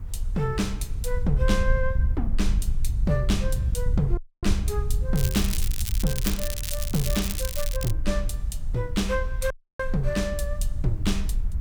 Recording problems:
hiss; SNR 28 dB
wind on the microphone; below 66 Hz, SNR 0 dB
dropout; at 4 s and at 9.5 s
crackle; from 5 to 8 s; loose cable, SNR 3 dB

